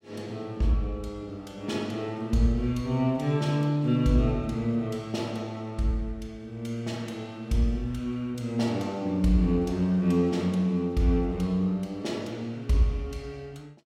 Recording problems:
none

